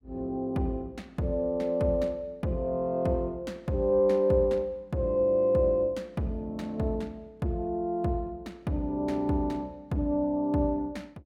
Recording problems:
none

